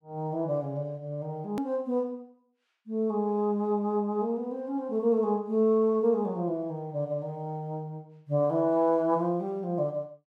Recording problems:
hard cut with a click; at 1.5 s

